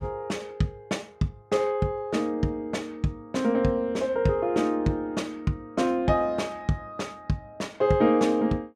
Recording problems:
none

